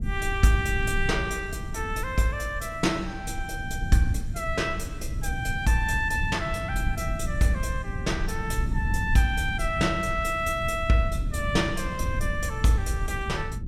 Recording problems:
low-frequency rumble; below 110 Hz, SNR 6 dB

